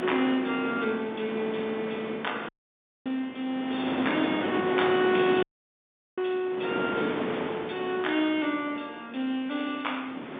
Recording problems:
telephone audio; 170 Hz to 3.6 kHz, G.711
wind on the microphone; below 1.2 kHz, SNR 5 dB
dropout; at 2.5 s for 0.5 s and at 5.5 s for 0.5 s

